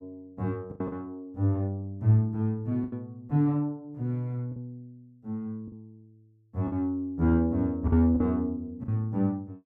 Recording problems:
lost packets; 5% of the sound replaced, filled with the last packet

